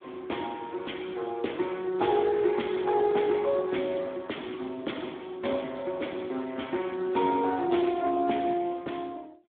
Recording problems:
telephone audio; 240 Hz to 3.6 kHz, Speex

